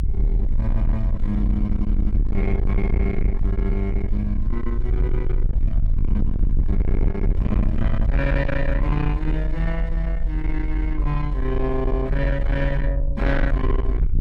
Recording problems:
distorted audio; soft clipping, signal-to-distortion ratio 6 dB
rumble; below 56 Hz, SNR -2 dB

